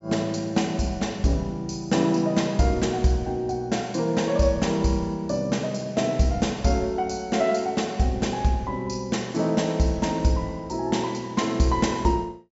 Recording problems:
treble cut off; nothing above 8 kHz

